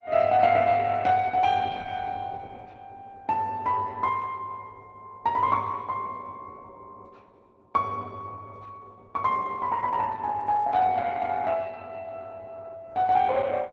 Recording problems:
lossy codec; Opus, log-spectral distance 3 dB

